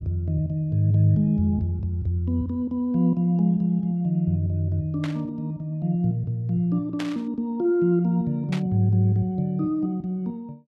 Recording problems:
burst of static; at 5 s, at 7 s and at 8.5 s; peak -6 dB vs average level

